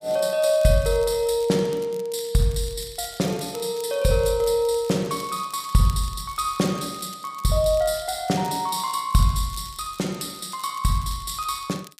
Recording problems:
crackle; vinyl, SNR 21 dB

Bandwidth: 15 kHz